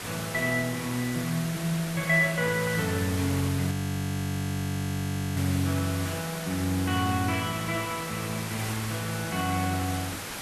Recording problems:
background hiss; slope -2 dB per octave, SNR 7 dB
audio freezing; at 3.5 s for 1.5 s

